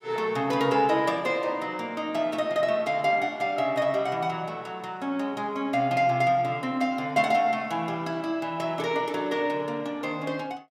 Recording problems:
none

